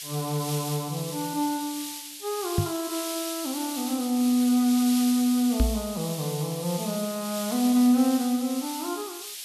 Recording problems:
hiss; SNR 8 dB
microphone thump; at 2.5 s and at 5.5 s; peak +5 dB vs average level

